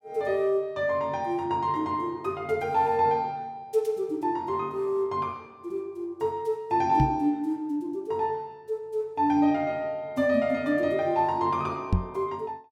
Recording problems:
microphone bump; at 7 s and at 12 s; peak +6 dB vs average level

